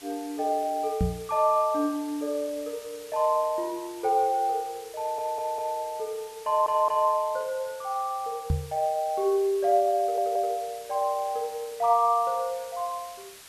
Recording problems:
background hiss; slope +1 dB per octave, SNR 19 dB
knock on the microphone; at 1 s and at 8.5 s; peak +4 dB vs average level
stutter; at 5 s, at 6.5 s and at 10 s

